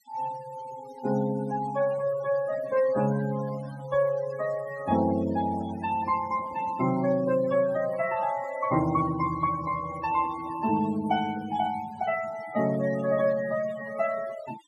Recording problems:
noise reduction artefacts; signal-to-artefact ratio 15 dB

